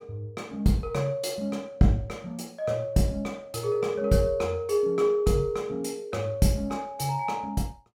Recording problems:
none

